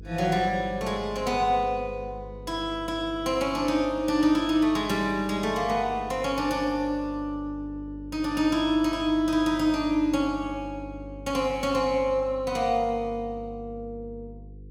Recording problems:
mains hum; 50 Hz, harmonics up to 500 Hz, SNR 17 dB

